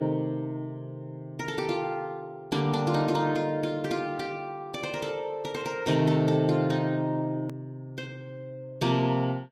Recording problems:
lossy compression; Vorbis, log-spectral distance 2 dB
hard cut with a click; at 7.5 s

